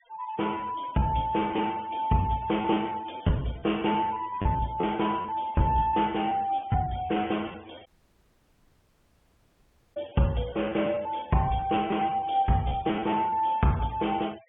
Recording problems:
treble cut off; nothing above 3.4 kHz
denoising artefacts; signal-to-artefact ratio 21 dB
packet loss; 11% of the sound replaced, filled with repeated pitch periods
dropout; at 8 s for 2 s

